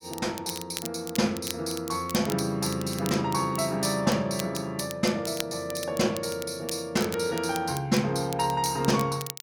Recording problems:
crackle; vinyl, SNR 12 dB

